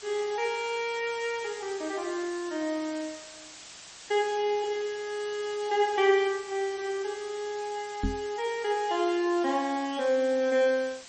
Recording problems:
lossy compression; MP3, log-spectral distance 10 dB, nothing above 6.9 kHz
hiss; slope +1 dB per octave, SNR 16 dB
microphone bump; at 8 s; peak +2 dB vs average level

